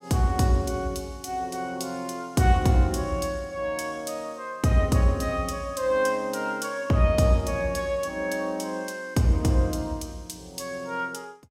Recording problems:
none

